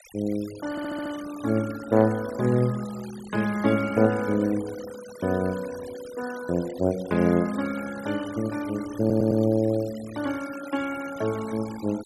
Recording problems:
denoising artefacts; signal-to-artefact ratio 17 dB
audio stuttering; at 0.5 s and at 9 s

